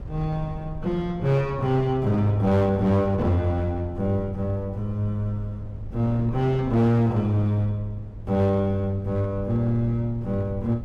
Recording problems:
distorted audio; hard clipping, uneven, signal-to-distortion ratio 10 dB
wind on the microphone; below 120 Hz, SNR 15 dB

